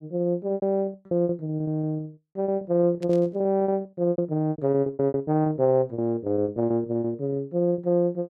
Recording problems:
packet loss; 22% of the sound replaced, filled with repeated pitch periods
static burst; at 3 s; peak -17 dB vs average level

